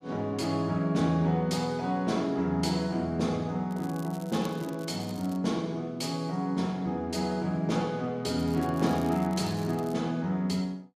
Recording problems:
crackle; from 3.5 to 5.5 s and from 8.5 to 10 s; loose cable, SNR 22 dB

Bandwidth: 14.5 kHz